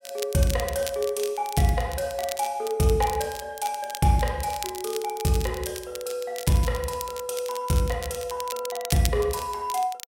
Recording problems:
crackling; vinyl, SNR 11 dB

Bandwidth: 16 kHz